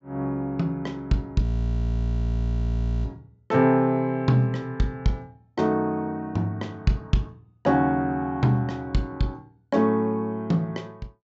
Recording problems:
low-pass filter; nothing above 8 kHz
audio freezing; at 1.5 s for 1.5 s

